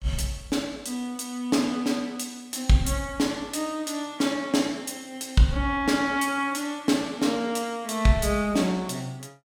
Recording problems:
none

